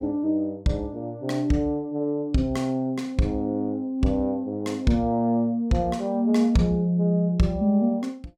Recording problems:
none

